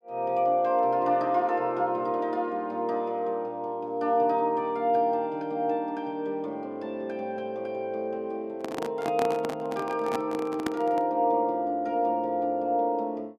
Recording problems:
handling noise; from 8.5 to 11 s; peak +1 dB vs average level

